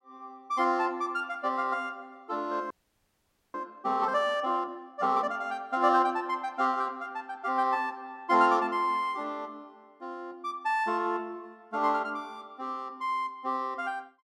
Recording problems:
frozen audio; at 2.5 s for 1 s

